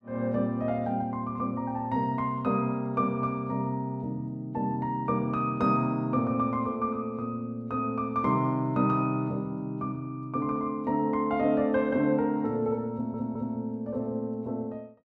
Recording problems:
stutter; at 13 s

